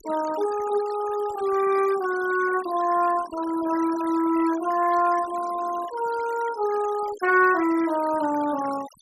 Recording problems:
noise reduction artefacts; signal-to-artefact ratio 17 dB

